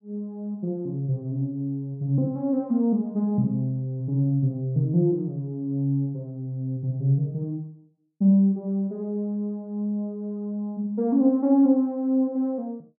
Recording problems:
none

